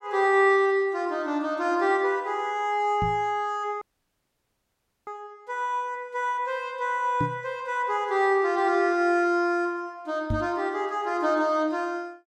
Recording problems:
knock on the microphone; at 3 s, at 7 s and at 10 s; peak 0 dB vs average level
audio cutting out; at 4 s for 1.5 s

